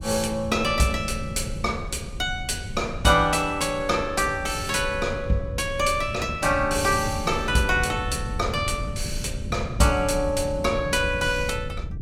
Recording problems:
wind noise; below 140 Hz, SNR 10 dB

